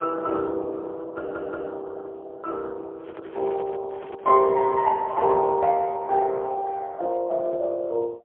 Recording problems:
telephone audio; 320 Hz to 2.1 kHz, AMR-NB, then MP3
stutter; at 1 s
handling noise; from 3 to 5.5 s; peak -9 dB vs average level

